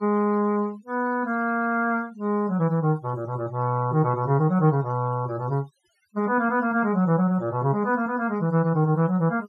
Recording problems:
noise reduction artefacts; signal-to-artefact ratio 26 dB

